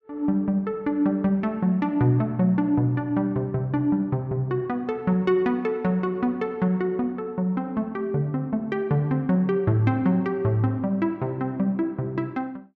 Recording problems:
none

